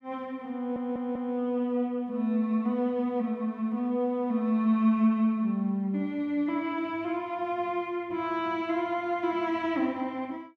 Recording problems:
audio stuttering; at 0.5 s

